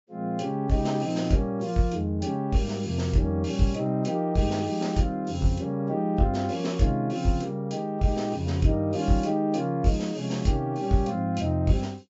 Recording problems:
treble missing; nothing above 8 kHz

